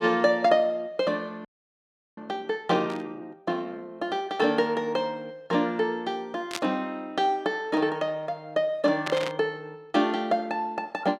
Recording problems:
frozen audio; at 1.5 s for 0.5 s
static burst; at 3 s, at 6.5 s and at 9 s; peak 0 dB vs average level

